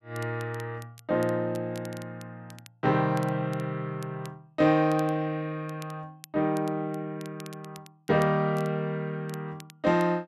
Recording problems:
crackle; vinyl, SNR 23 dB

